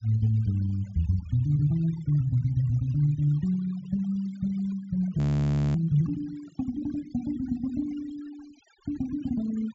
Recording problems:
treble missing; nothing above 8 kHz
noise reduction artefacts; signal-to-artefact ratio 25 dB
frozen audio; at 5 s for 0.5 s

